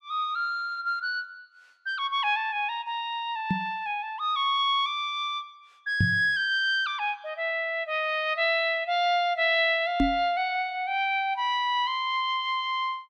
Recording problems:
knock on the microphone; at 3.5 s, at 6 s and at 10 s; peak +5 dB vs average level

